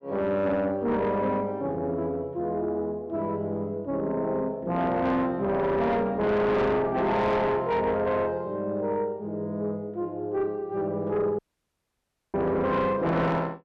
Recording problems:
distortion; soft clipping, signal-to-distortion ratio 8 dB
audio cutting out; at 11 s for 1 s

